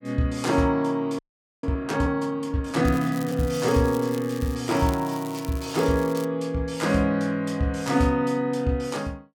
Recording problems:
frozen audio; at 1 s
crackle; from 3 to 4.5 s and from 4.5 to 6.5 s; loose cable, SNR 18 dB

